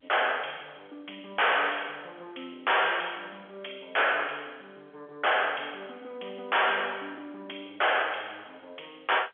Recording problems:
telephone audio; 260 Hz to 3.4 kHz, G.711
distortion; hard clipping, signal-to-distortion ratio 6 dB

